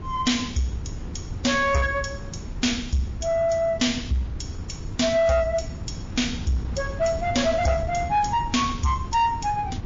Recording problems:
lossy compression; MP3, log-spectral distance 3 dB, nothing above 6.7 kHz
distorted audio; soft clipping, signal-to-distortion ratio 11 dB
wind on the microphone; below 190 Hz, SNR 11 dB

